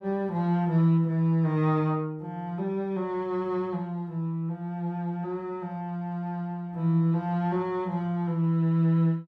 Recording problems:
none

